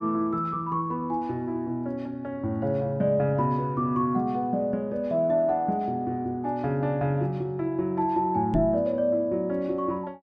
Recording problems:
microphone thump; at 8.5 s; peak +3 dB vs average level

